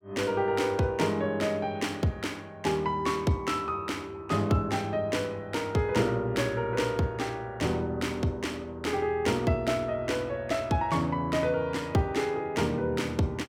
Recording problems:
none

